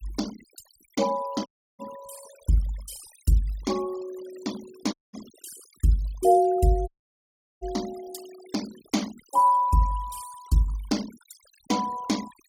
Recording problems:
noise reduction artefacts; signal-to-artefact ratio 19 dB
dropout; at 1.5 s, at 5 s and at 7 s for 0.5 s

